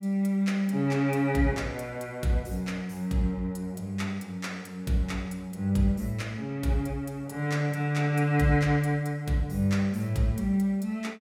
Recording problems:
none

